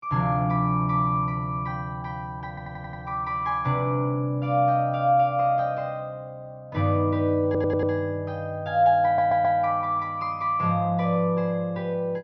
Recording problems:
treble cut off; nothing above 6.1 kHz
audio stuttering; at 2.5 s, at 7.5 s and at 9 s

